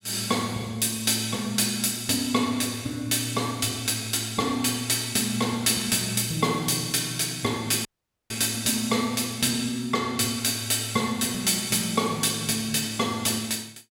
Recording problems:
dropout; at 8 s

